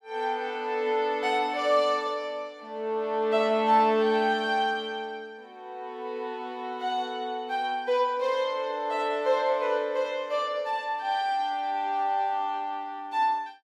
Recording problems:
none

